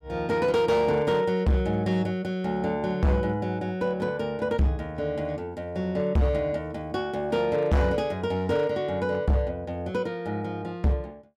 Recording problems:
distorted audio; hard clipping, signal-to-distortion ratio 6 dB

